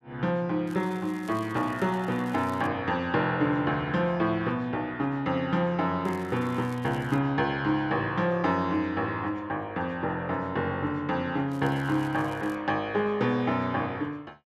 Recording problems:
crackle; from 0.5 to 2.5 s, from 6 to 7 s and from 12 to 13 s; loose cable, SNR 25 dB

